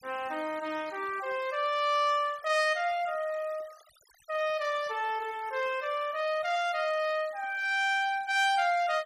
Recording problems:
denoising artefacts; signal-to-artefact ratio 22 dB

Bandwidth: 15 kHz